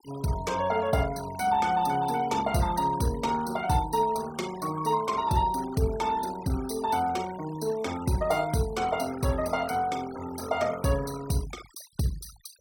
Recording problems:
noise reduction artefacts; signal-to-artefact ratio 17 dB

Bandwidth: 17 kHz